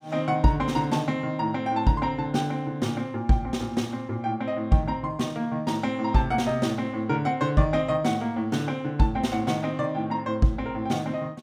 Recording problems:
none

